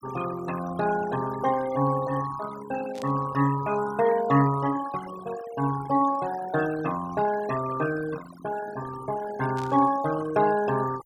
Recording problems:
denoising artefacts; signal-to-artefact ratio 13 dB
burst of static; at 3 s and at 9.5 s; peak -12 dB vs average level

